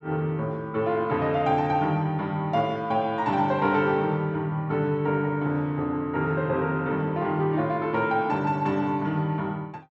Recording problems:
none

